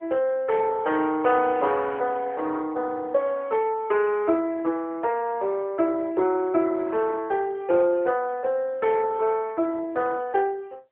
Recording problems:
phone line; 280 Hz to 3.7 kHz, AMR-NB

